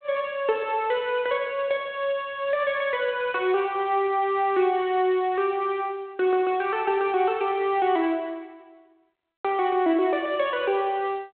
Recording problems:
phone line; 220 Hz to 3.5 kHz, G.726

